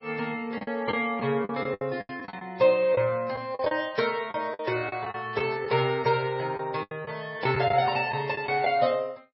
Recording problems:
lossy codec; MP3, log-spectral distance 3 dB, nothing above 4.6 kHz
packet loss; 10% of the sound replaced, filled with the last packet
static burst; at 2 s, at 5.5 s and at 8 s; peak -13 dB vs average level

